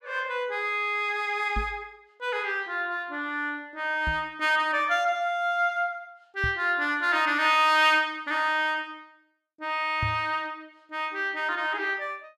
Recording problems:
knock on the microphone; 4 times, first at 1.5 s; peak -2 dB vs average level

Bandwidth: 14.5 kHz